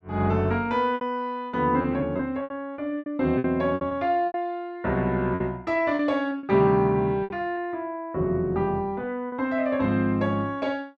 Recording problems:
lost packets; 8% of the sound replaced, filled with repeated pitch periods

